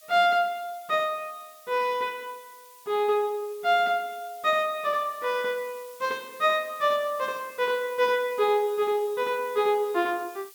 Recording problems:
background hiss; slope +5 dB per octave, SNR 22 dB

